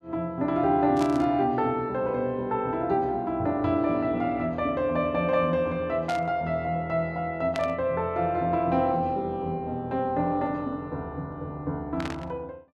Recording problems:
static burst; 4 times, first at 1 s; peak -5 dB vs average level

